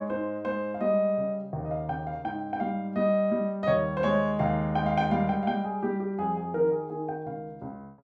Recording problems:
none

